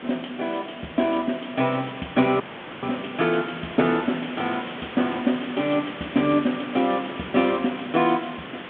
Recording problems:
telephone audio; 150 Hz to 3.5 kHz, G.726
hiss; SNR 12 dB
audio cutting out; at 2.5 s

